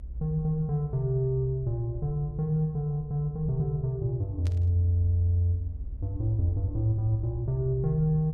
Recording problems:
low-frequency rumble; below 64 Hz, strongest tone 62 Hz, SNR 12 dB
static burst; at 4.5 s; peak -14 dB vs average level

